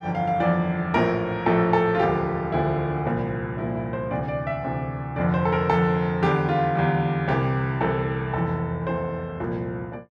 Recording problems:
none

